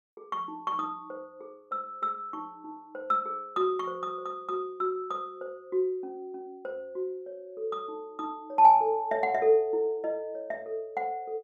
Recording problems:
none

